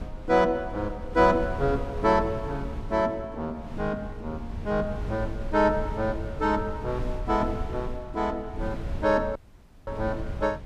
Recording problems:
wind on the microphone; below 110 Hz, SNR 10 dB
audio cutting out; at 9.5 s for 0.5 s

